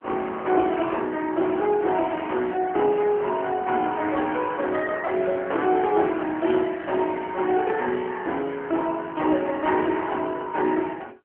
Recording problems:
phone line; 240 Hz to 3.3 kHz, AMR-NB

